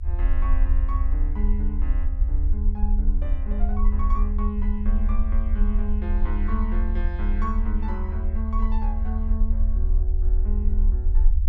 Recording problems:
low-frequency rumble; below 60 Hz, strongest tone 32 Hz, SNR -9 dB

